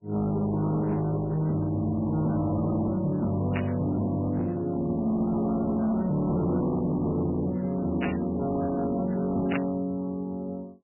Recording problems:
codec artefacts; MP3, log-spectral distance 2 dB, nothing above 11.3 kHz
distortion; hard clipping, signal-to-distortion ratio 11 dB
static burst; at 3.5 s, at 8 s and at 9.5 s; peak -1 dB vs average level

